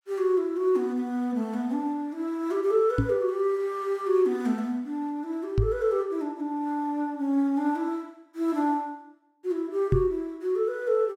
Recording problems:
knock on the microphone; at 3 s, at 5.5 s and at 10 s; peak +6 dB vs average level

